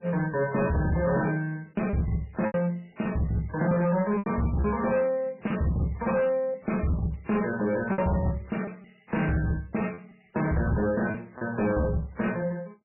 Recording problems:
lossy codec; MP3, log-spectral distance 8 dB, nothing above 2.6 kHz
distorted audio; hard clipping, signal-to-distortion ratio 11 dB
lost packets; 5% of the sound replaced, filled with repeated pitch periods

